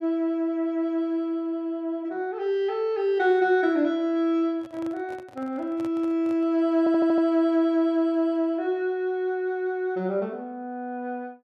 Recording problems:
handling noise; from 4.5 to 6.5 s; peak -13 dB vs average level
stutter; at 7 s

